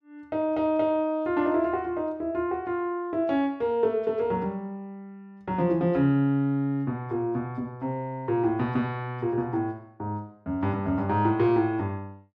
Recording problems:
none

